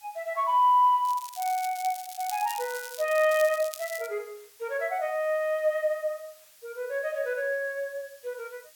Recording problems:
background hiss; slope +3 dB per octave, SNR 26 dB
crackle; from 1 to 4 s; loose cable, SNR 13 dB

